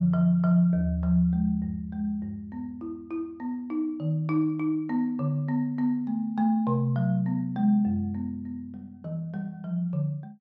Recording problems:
none

